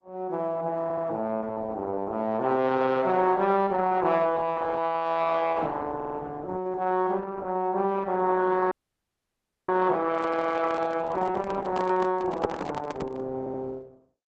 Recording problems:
codec artefacts; Opus, log-spectral distance 3 dB
audio stuttering; at 1 s, at 6 s and at 13 s
frozen audio; at 8.5 s for 1 s
microphone handling noise; from 10 to 13 s; peak -2 dB vs average level

